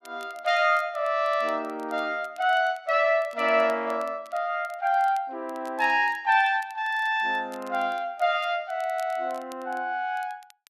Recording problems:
crackle; vinyl, SNR 28 dB

